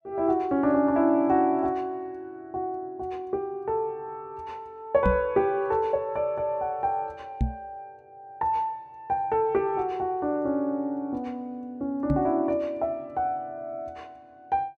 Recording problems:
microphone thump; at 5 s, at 7.5 s and at 12 s; peak +5 dB vs average level

